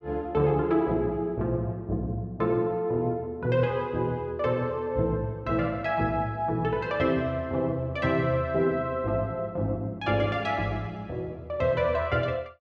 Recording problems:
none

